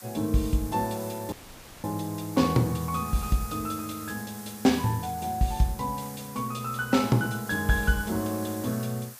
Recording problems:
background hiss; SNR 14 dB
dropout; at 1.5 s for 0.5 s

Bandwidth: 15 kHz